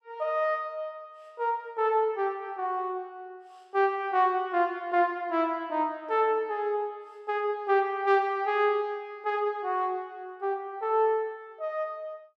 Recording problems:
none

